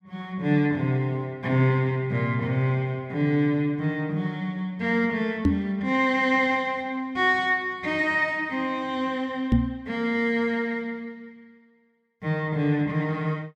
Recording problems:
knock on the microphone; at 5.5 s and at 9.5 s; peak +8 dB vs average level

